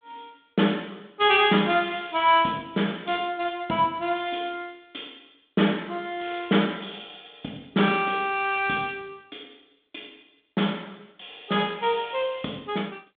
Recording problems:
phone line; 170 Hz to 3.6 kHz, G.726

